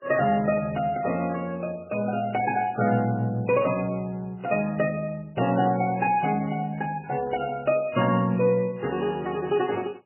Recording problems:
codec artefacts; MP3, log-spectral distance 3 dB, nothing above 2.5 kHz

